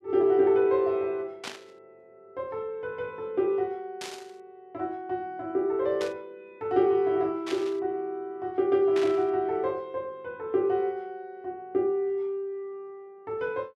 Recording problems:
static burst; 5 times, first at 1.5 s; peak -4 dB vs average level

